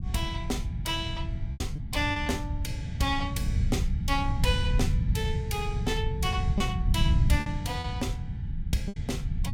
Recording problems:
rumble; below 130 Hz, SNR -2 dB
packet loss; 4% of the sound replaced, filled with repeated pitch periods

